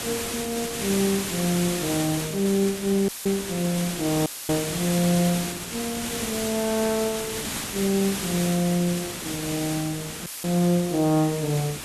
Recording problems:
background hiss; slope -2 dB per octave, SNR 5 dB
dropout; at 3 s, at 4.5 s and at 10 s; filled with static

